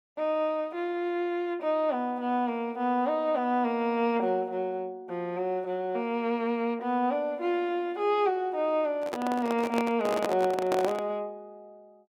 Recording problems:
microphone handling noise; from 9 to 11 s; peak +2 dB vs average level

